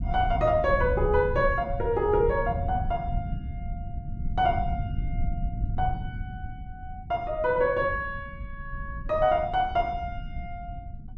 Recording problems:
low-frequency rumble; below 110 Hz, SNR 8 dB

